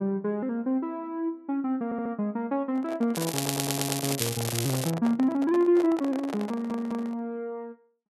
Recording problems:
audio stuttering; at 2 s, at 3.5 s and at 6.5 s
microphone handling noise; from 2.5 to 7 s; peak -4 dB vs average level
crackle; from 3 to 5 s; loose cable, SNR 3 dB

